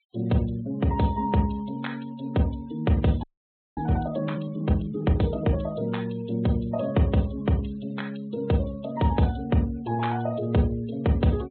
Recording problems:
treble missing; nothing above 4 kHz
denoising artefacts; signal-to-artefact ratio 24 dB
audio freezing; at 3 s for 0.5 s

